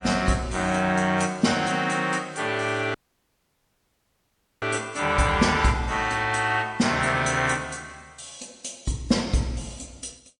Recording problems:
codec artefacts; MP3, log-spectral distance 5 dB, nothing above 9.2 kHz
dropout; at 3 s for 1.5 s

